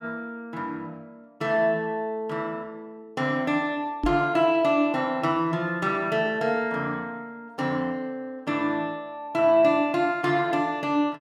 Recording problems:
microphone bump; at 4 s; peak +2 dB vs average level

